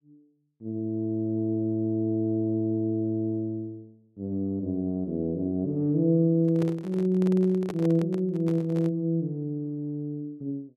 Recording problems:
handling noise; from 6.5 to 9 s; peak -3 dB vs average level

